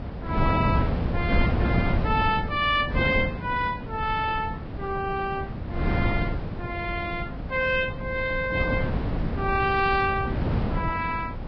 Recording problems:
lossy codec; Vorbis, log-spectral distance 2 dB
wind on the microphone; below 260 Hz, SNR 2 dB

